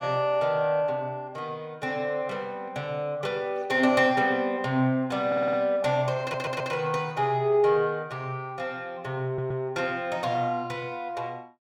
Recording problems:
audio stuttering; at 5.5 s, at 6 s and at 9.5 s

